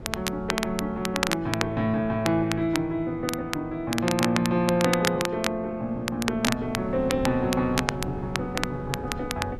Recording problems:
wind on the microphone; below 280 Hz, SNR 14 dB
crackling; vinyl, SNR 5 dB

